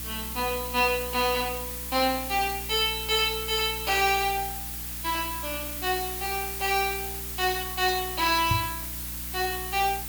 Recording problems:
hum; 60 Hz, harmonics up to 300 Hz, SNR 15 dB
background hiss; slope +1 dB per octave, SNR 6 dB
microphone thump; at 8.5 s; peak +3 dB vs average level

